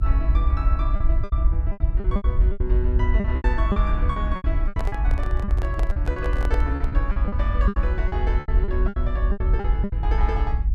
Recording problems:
low-frequency rumble; below 64 Hz, SNR -8 dB
packet loss; 15% of the sound replaced, filled with repeated pitch periods
handling noise; from 4.5 to 7 s; peak +2 dB vs average level

